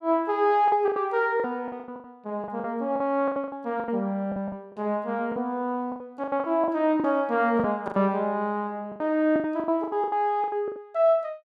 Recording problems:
packet loss; 16% of the sound replaced, filled with the last packet

